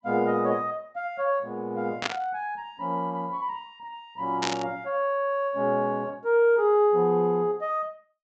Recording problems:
treble cut off; nothing above 8 kHz
static burst; at 2 s and at 4.5 s; peak +2 dB vs average level

